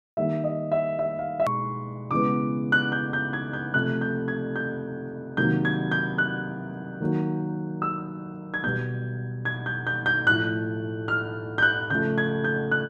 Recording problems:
click at an edit; at 1.5 s

